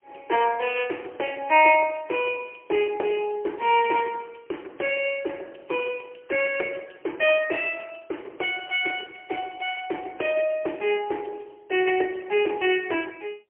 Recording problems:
phone line; 300 Hz to 3.2 kHz, AMR-NB, then MP3

